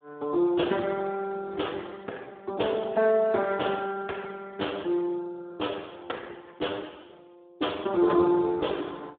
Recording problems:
telephone audio; 280 Hz to 3.5 kHz, Speex

